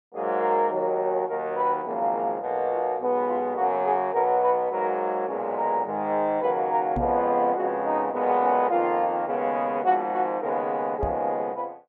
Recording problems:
knock on the microphone; at 7 s and at 11 s; peak -1 dB vs average level

